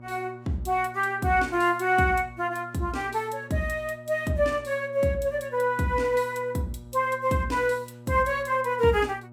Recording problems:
electrical hum; 60 Hz, harmonics up to 1.2 kHz, SNR 20 dB

